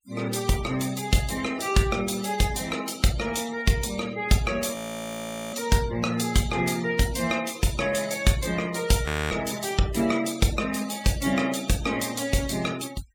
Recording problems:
noise reduction artefacts; signal-to-artefact ratio 16 dB
frozen audio; at 5 s for 1 s and at 9 s

